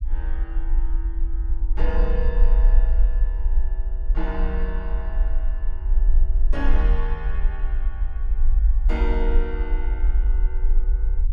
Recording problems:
low-frequency rumble; below 44 Hz, strongest tone 24 Hz, SNR -10 dB

